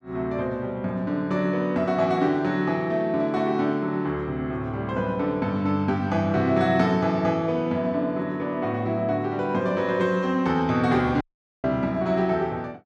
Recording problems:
dropout; at 11 s

